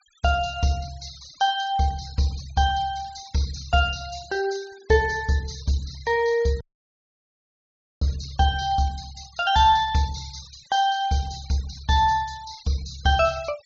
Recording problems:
treble cut off; nothing above 8 kHz
denoising artefacts; signal-to-artefact ratio 21 dB
audio cutting out; at 6.5 s for 1.5 s

